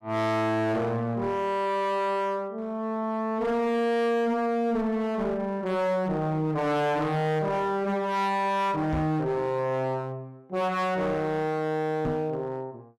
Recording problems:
distortion; hard clipping, uneven, signal-to-distortion ratio 6 dB
microphone bump; at 9 s and at 12 s; peak +1 dB vs average level

